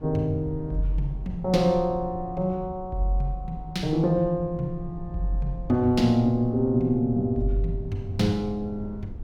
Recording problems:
low-frequency rumble; below 110 Hz, SNR 15 dB

